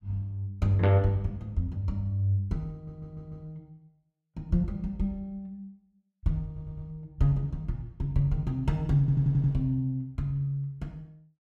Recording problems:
stutter; at 2.5 s, at 6.5 s and at 9 s

